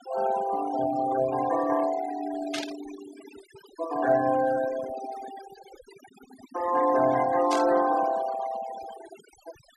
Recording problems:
noise reduction artefacts; signal-to-artefact ratio 14 dB
burst of static; at 2.5 s and at 7.5 s; peak -3 dB vs average level

